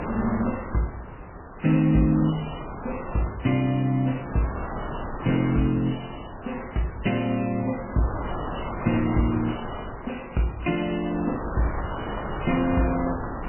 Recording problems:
lossy compression; MP3, log-spectral distance 7 dB, nothing above 3 kHz
wind noise; below 1.1 kHz, SNR 9 dB

